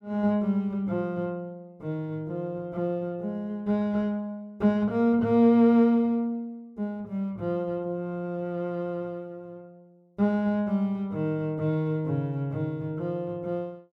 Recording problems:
none

